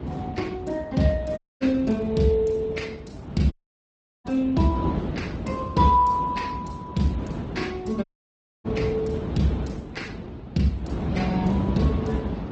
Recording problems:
lossy compression; Speex, then Opus, log-spectral distance 2 dB, nothing above 8 kHz
low-frequency rumble; below 350 Hz, SNR 7 dB
audio cutting out; at 1.5 s, at 3.5 s for 0.5 s and at 8 s for 0.5 s

